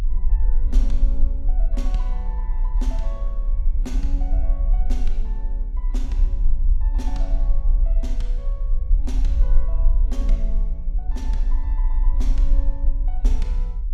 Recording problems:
rumble; below 40 Hz, SNR -14 dB

